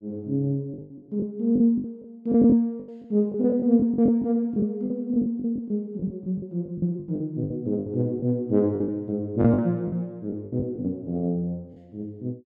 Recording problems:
packet loss; 13% of the sound replaced, filled with the last packet

